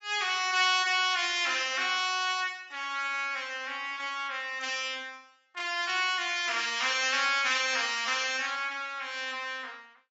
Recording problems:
codec artefacts; AAC, log-spectral distance 4 dB, nothing above 7.3 kHz

